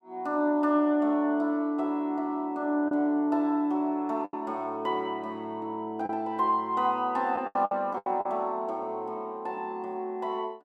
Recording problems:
lost packets; 4% of the sound replaced, filled with the last packet

